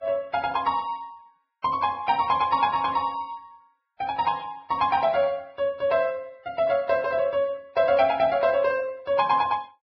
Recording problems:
lossy compression; Vorbis, log-spectral distance 2 dB, nothing above 4.8 kHz

